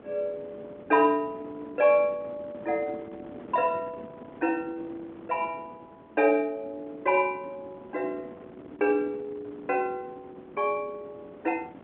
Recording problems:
phone line; 190 Hz to 3.6 kHz, G.711
wind on the microphone; below 570 Hz, SNR 19 dB

